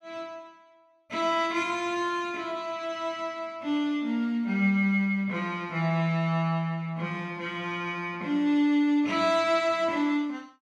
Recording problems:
none

